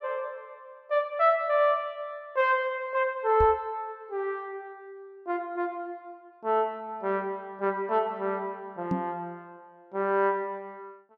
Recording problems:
knock on the microphone; at 3.5 s and at 9 s; peak +3 dB vs average level

